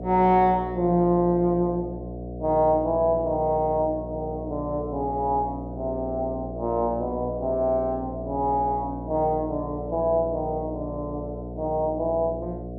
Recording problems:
mains hum; 60 Hz, harmonics up to 720 Hz, SNR 10 dB

